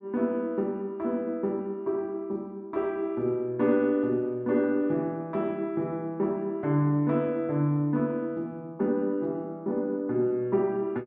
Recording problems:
none

